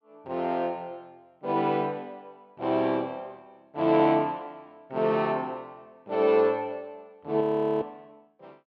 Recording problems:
frozen audio; at 7.5 s

